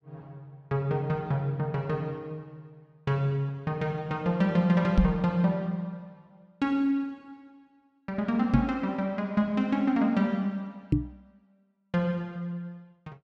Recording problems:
knock on the microphone; at 5 s, at 8.5 s and at 11 s; peak +9 dB vs average level

